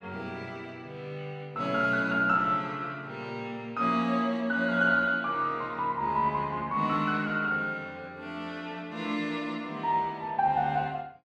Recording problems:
none

